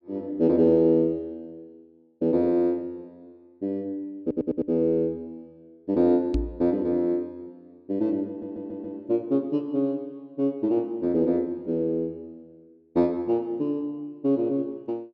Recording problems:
stutter; at 4 s and at 8.5 s
knock on the microphone; at 6.5 s; peak +2 dB vs average level

